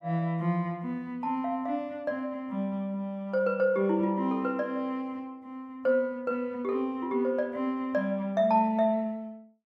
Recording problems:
none

